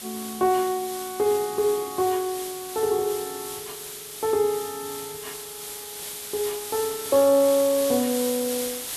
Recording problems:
background hiss; slope +1 dB per octave, SNR 9 dB
edit click; at 6 s

